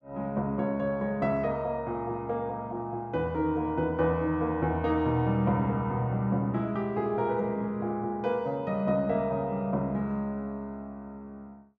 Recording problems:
none

